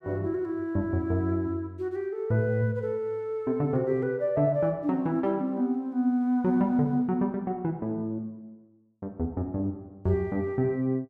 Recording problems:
none

